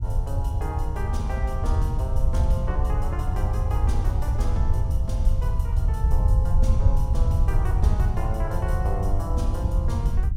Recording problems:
low-frequency rumble; below 84 Hz, SNR -8 dB

